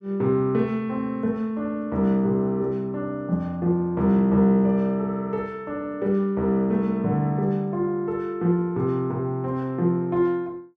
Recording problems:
none

